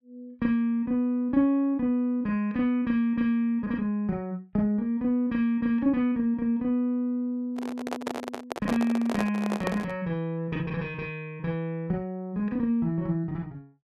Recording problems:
microphone handling noise; from 7.5 to 10 s; peak 0 dB vs average level

